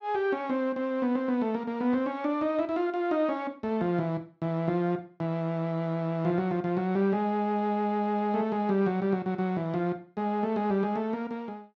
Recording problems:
none

